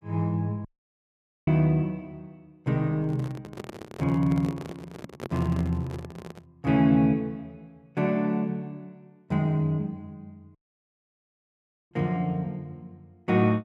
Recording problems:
audio cutting out; at 0.5 s for 1 s and at 11 s for 1.5 s
handling noise; from 3 to 6.5 s; peak -6 dB vs average level

